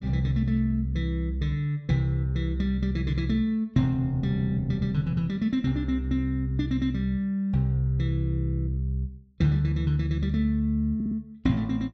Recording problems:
audio stuttering; at 11 s

